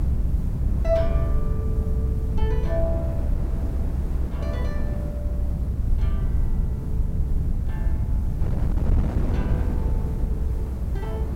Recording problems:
background hiss; slope -1 dB per octave, SNR 23 dB
rumble; below 88 Hz, SNR -7 dB
wind on the microphone; below 190 Hz, SNR -2 dB

